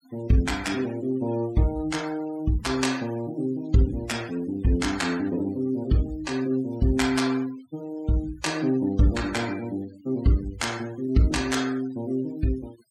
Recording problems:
noise reduction artefacts; signal-to-artefact ratio 19 dB

